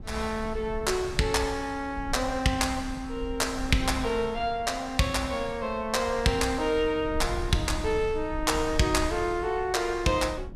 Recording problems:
rumble; below 78 Hz, SNR 13 dB

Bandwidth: 14.5 kHz